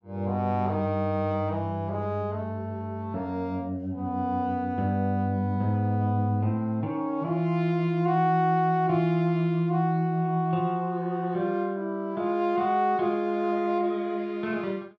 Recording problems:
none

